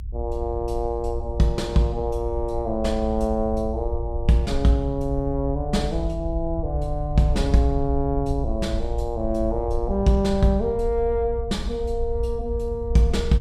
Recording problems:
rumble; below 64 Hz, SNR 6 dB

